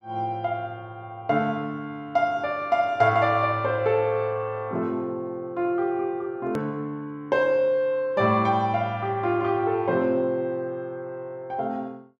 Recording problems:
hard cut with a click; at 6.5 s

